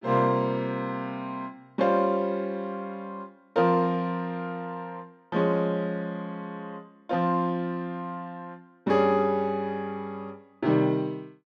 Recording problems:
none

